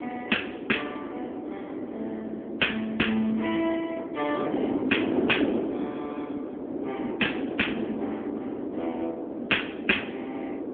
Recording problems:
phone line; 240 Hz to 3.4 kHz, AMR-NB
wind on the microphone; below 450 Hz, SNR 3 dB

